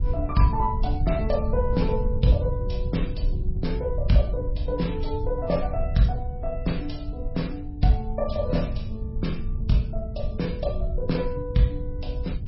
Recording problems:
lossy codec; MP3, log-spectral distance 2 dB, nothing above 5.5 kHz
rumble; below 84 Hz, SNR 4 dB

